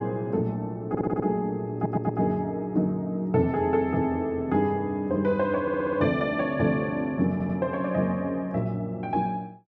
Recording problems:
stutter; 4 times, first at 1 s

